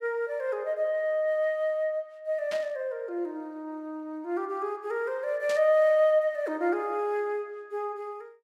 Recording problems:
static burst; at 2.5 s and at 5.5 s; peak -7 dB vs average level

